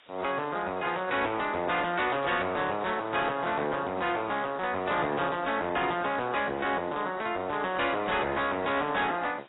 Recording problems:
lossy codec; AAC, log-spectral distance 12 dB, nothing above 3.8 kHz
distorted audio; hard clipping, signal-to-distortion ratio 11 dB
background hiss; SNR 27 dB

